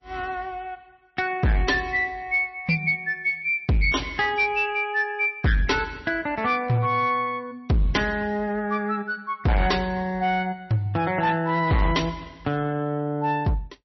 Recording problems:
codec artefacts; MP3, log-spectral distance 2 dB, nothing above 5.8 kHz
distorted audio; hard clipping, uneven, signal-to-distortion ratio 8 dB

